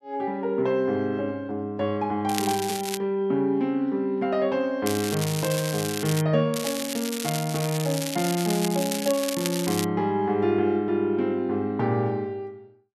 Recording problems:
crackling; at 2.5 s, from 5 to 6 s and from 6.5 to 10 s; loose cable, SNR 7 dB

